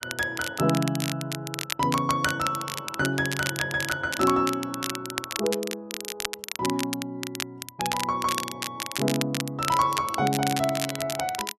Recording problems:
crackling; vinyl, SNR 5 dB

